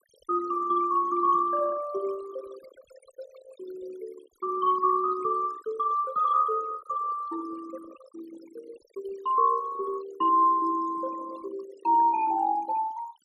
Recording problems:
denoising artefacts; signal-to-artefact ratio 19 dB

